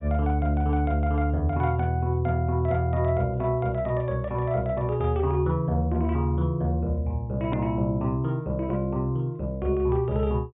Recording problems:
treble missing; nothing above 4 kHz
hard cut with a click; at 7.5 s

